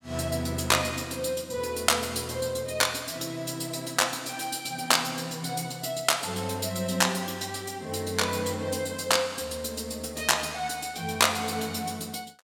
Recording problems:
none

